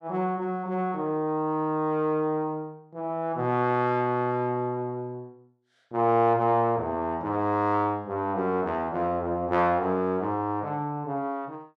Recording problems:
none

